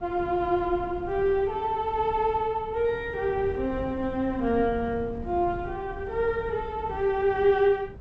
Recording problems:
low-pass filter; nothing above 8 kHz
wind noise; below 180 Hz, SNR 15 dB

